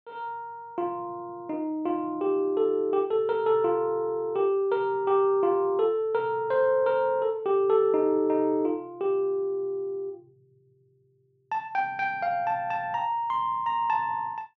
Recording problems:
none

